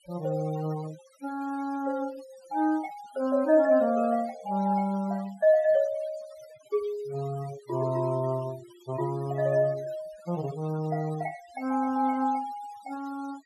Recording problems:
denoising artefacts; signal-to-artefact ratio 20 dB

